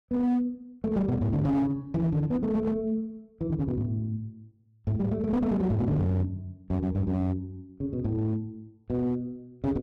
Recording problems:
distorted audio; hard clipping, signal-to-distortion ratio 11 dB

